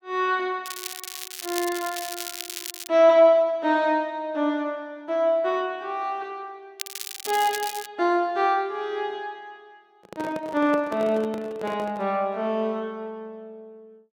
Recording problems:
crackling; from 0.5 to 3 s and from 7 to 8 s; loose cable, SNR 9 dB
microphone handling noise; from 10 to 12 s; peak -7 dB vs average level

